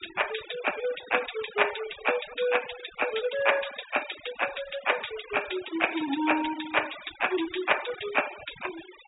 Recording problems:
treble missing; nothing above 4 kHz
denoising artefacts; signal-to-artefact ratio 12 dB

